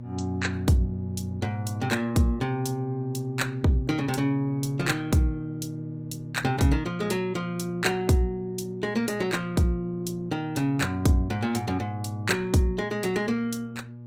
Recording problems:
lossy compression; Opus, log-spectral distance 2 dB
hum; 60 Hz, harmonics up to 600 Hz, SNR 13 dB

